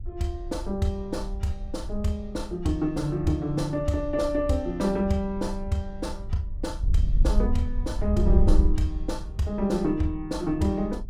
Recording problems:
wind noise; below 62 Hz, SNR 4 dB

